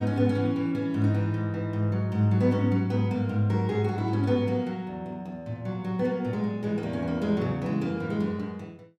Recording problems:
none

